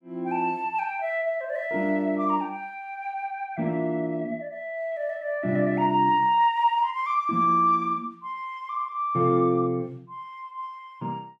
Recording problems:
none

